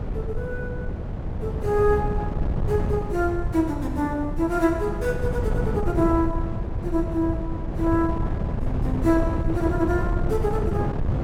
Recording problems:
wind noise; below 180 Hz, SNR 2 dB

